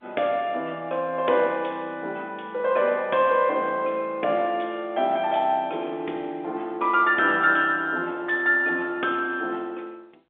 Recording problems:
telephone audio; 280 Hz to 3.6 kHz, G.711

